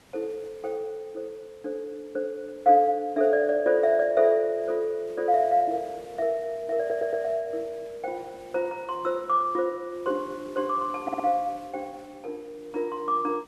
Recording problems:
hiss; slope -4 dB per octave, SNR 27 dB
stutter; at 7 s and at 11 s

